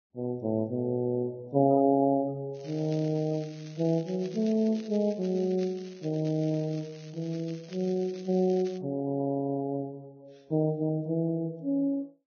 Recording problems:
lossy compression; Vorbis, log-spectral distance 2 dB
crackle; from 2.5 to 9 s; loose cable, SNR 22 dB

